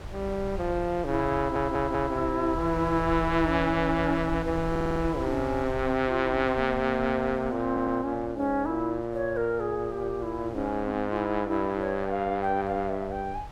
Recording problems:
wind on the microphone; below 210 Hz, SNR 13 dB
stutter; at 1.5 s, at 4.5 s and at 7.5 s

